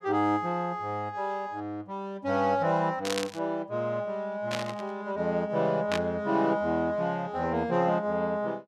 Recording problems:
static burst; at 3 s, at 4.5 s and at 6 s; peak +2 dB vs average level

